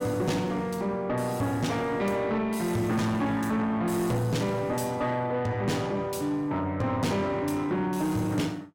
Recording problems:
distorted audio; soft clipping, signal-to-distortion ratio 11 dB

